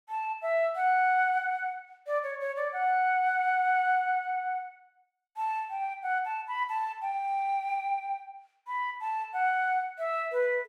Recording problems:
none

